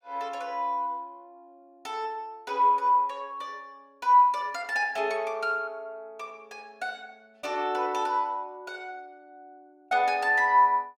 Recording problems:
none

